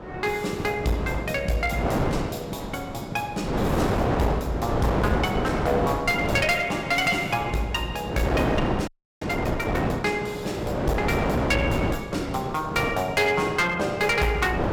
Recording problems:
distortion; hard clipping, uneven, signal-to-distortion ratio 10 dB
wind noise; below 750 Hz, SNR 2 dB
frozen audio; at 9 s

